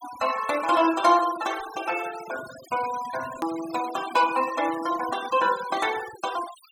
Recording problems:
noise reduction artefacts; signal-to-artefact ratio 13 dB
edit click; at 3.5 s

